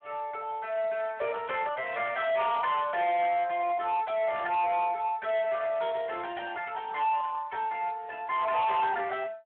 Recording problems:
telephone audio; 280 Hz to 3.5 kHz, Speex
distorted audio; soft clipping, signal-to-distortion ratio 8 dB

